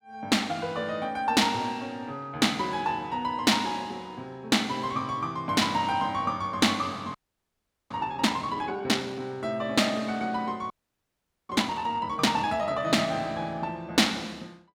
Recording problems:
audio freezing; at 7 s for 1 s and at 11 s for 1 s

